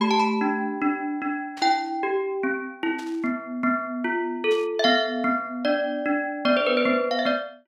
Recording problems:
static burst; at 1.5 s, at 3 s and at 4.5 s; peak -13 dB vs average level

